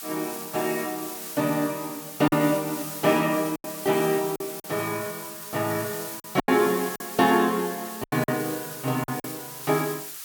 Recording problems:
background hiss; SNR 9 dB
packet loss; 6% of the sound replaced, filled with silence

